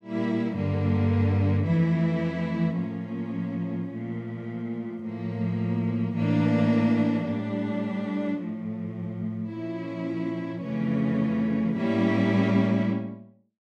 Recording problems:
none

